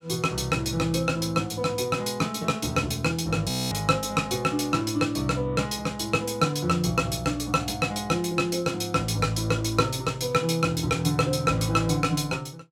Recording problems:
frozen audio; at 3.5 s

